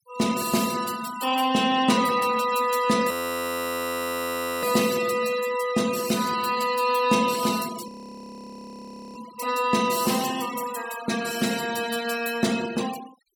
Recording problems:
noise reduction artefacts; signal-to-artefact ratio 13 dB
frozen audio; at 3 s for 1.5 s and at 8 s for 1.5 s

